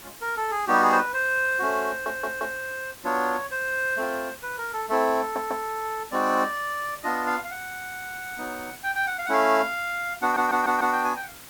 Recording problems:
background hiss; slope -1 dB per octave, SNR 17 dB
stutter; 4 times, first at 2 s

